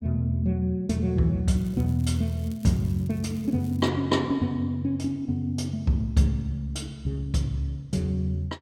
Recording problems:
crackling; from 1.5 to 4 s; loose cable, SNR 26 dB

